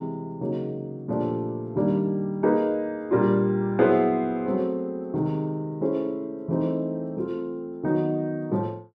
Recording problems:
none

